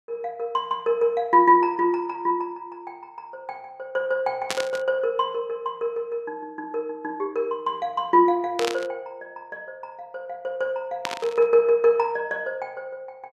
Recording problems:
static burst; at 4.5 s, at 8.5 s and at 11 s; peak +1 dB vs average level

